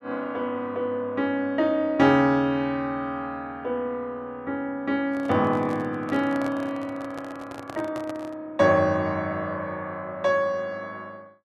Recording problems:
handling noise; from 5 to 8.5 s; peak -7 dB vs average level

